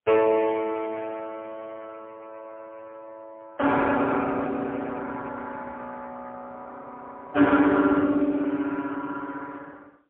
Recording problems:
telephone audio; 240 Hz to 3.4 kHz, AMR-NB, then MP3

